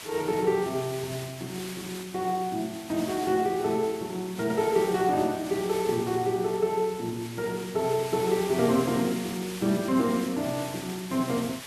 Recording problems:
background hiss; slope 0 dB per octave, SNR 13 dB

